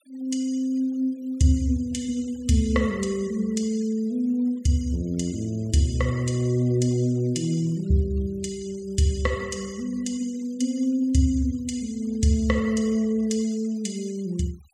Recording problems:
denoising artefacts; signal-to-artefact ratio 24 dB

